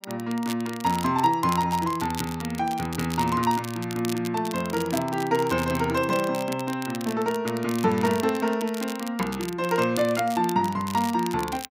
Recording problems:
crackling; vinyl, SNR 13 dB

